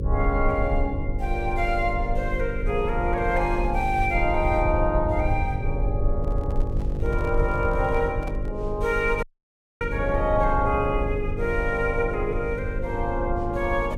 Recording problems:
hum; 50 Hz, harmonics up to 550 Hz, SNR 8 dB
low-frequency rumble; below 70 Hz, SNR 4 dB
handling noise; from 6 to 8.5 s; peak -10 dB vs average level
dropout; at 9 s for 0.5 s

